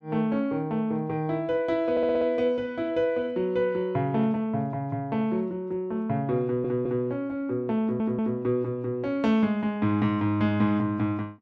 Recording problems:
stutter; at 2 s, at 6.5 s and at 8 s

